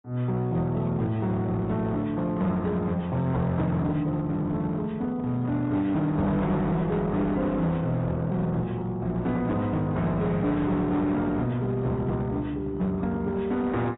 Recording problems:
lossy codec; AAC, then AAC, log-spectral distance 2 dB, nothing above 3.8 kHz
distortion; hard clipping, uneven, signal-to-distortion ratio 11 dB

